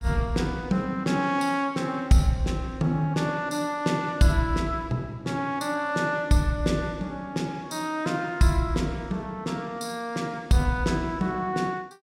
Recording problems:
none

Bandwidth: 16 kHz